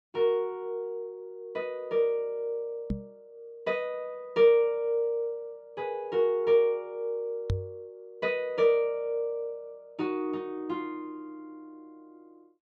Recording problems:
microphone bump; at 3 s and at 7.5 s; peak +3 dB vs average level

